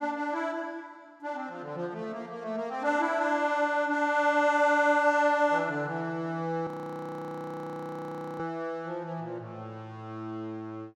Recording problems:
frozen audio; at 6.5 s for 1.5 s

